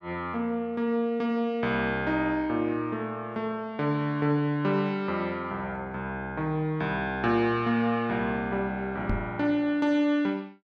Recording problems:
knock on the microphone; at 9 s; peak +1 dB vs average level

